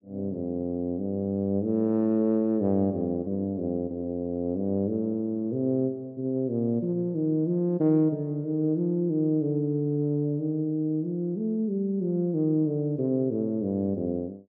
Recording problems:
none

